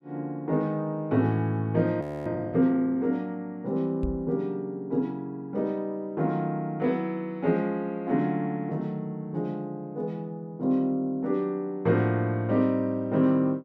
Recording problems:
frozen audio; at 2 s
microphone thump; at 4 s; peak -1 dB vs average level

